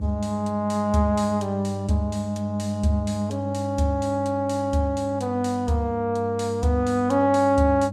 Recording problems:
hum; 50 Hz, harmonics up to 600 Hz, SNR 9 dB

